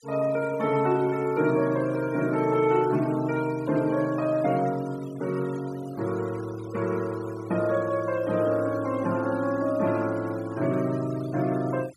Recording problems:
noise reduction artefacts; signal-to-artefact ratio 20 dB

